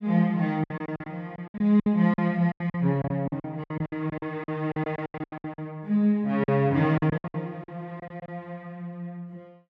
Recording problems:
packet loss; 16% of the sound replaced, filled with silence

